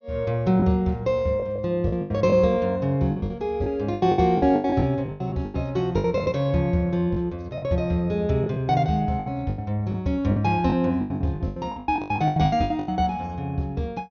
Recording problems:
treble missing; nothing above 6.5 kHz
packet loss; 14% of the sound replaced, filled with the last packet

